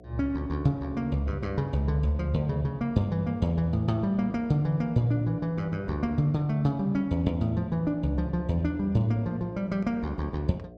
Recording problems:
hum; 60 Hz, harmonics up to 720 Hz, SNR 21 dB

